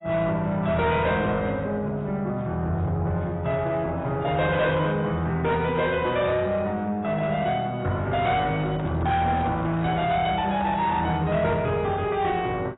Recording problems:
lossy compression; AAC, log-spectral distance 2 dB, nothing above 3.8 kHz
distortion; soft clipping, signal-to-distortion ratio 12 dB
microphone handling noise; from 8.5 to 11 s; peak -5 dB vs average level

